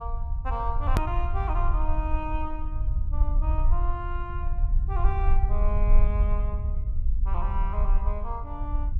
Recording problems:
rumble; below 56 Hz, SNR -7 dB
edit click; at 1 s

